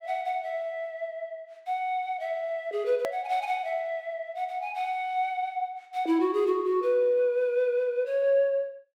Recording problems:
click at an edit; at 3 s

